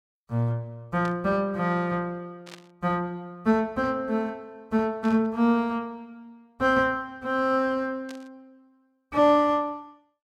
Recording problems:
static burst; 4 times, first at 1 s; peak -13 dB vs average level

